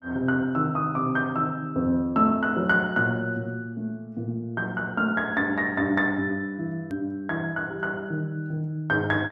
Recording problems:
click at an edit; at 7 s

